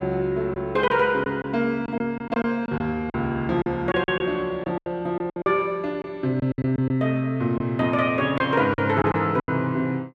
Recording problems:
lost packets; 10% of the sound replaced, filled with silence

